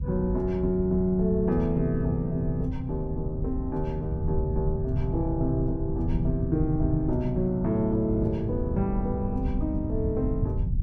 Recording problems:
rumble; below 120 Hz, SNR 4 dB

